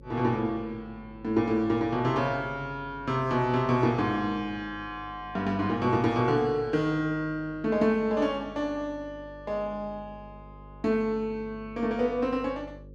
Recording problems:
hum; 50 Hz, harmonics up to 550 Hz, SNR 21 dB

